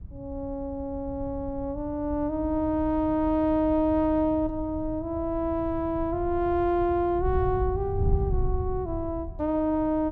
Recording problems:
wind on the microphone; below 100 Hz, SNR 9 dB

